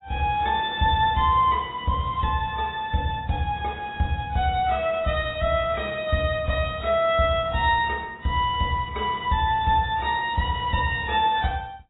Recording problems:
lossy compression; AAC, log-spectral distance 3 dB, nothing above 3.8 kHz

